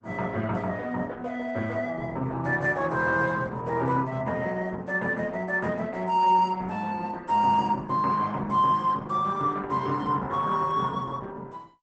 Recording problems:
lossy compression; Opus, log-spectral distance 3 dB, nothing above 8 kHz

